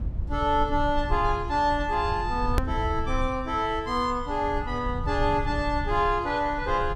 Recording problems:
rumble; below 84 Hz, SNR 8 dB
click at an edit; at 2.5 s

